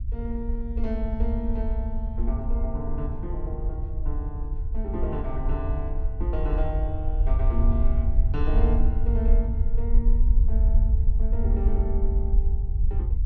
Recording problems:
low-frequency rumble; below 60 Hz, SNR -8 dB

